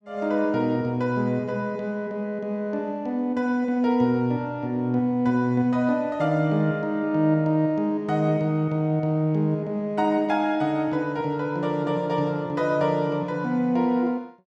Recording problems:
none

